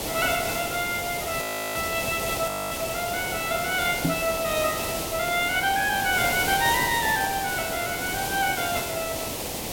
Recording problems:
hiss; SNR 3 dB
audio freezing; at 1.5 s and at 2.5 s
microphone thump; at 4 s; peak +4 dB vs average level

